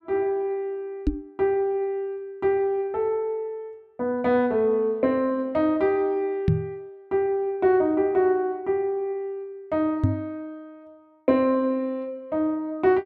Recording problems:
knock on the microphone; at 1 s, at 6.5 s and at 10 s; peak +7 dB vs average level

